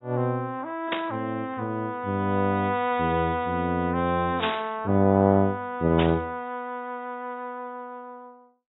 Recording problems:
lossy compression; AAC, log-spectral distance 2 dB, nothing above 3.2 kHz
static burst; at 1 s, at 4.5 s and at 6 s; peak +2 dB vs average level

